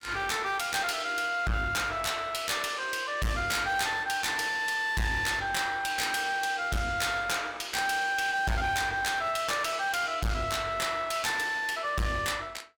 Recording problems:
distorted audio; hard clipping, uneven, signal-to-distortion ratio 6 dB

